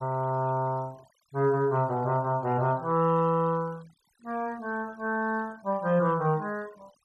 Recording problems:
noise reduction artefacts; signal-to-artefact ratio 28 dB

